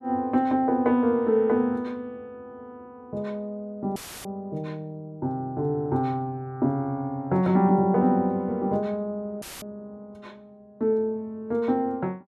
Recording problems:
dropout; at 4 s and at 9.5 s; filled with static

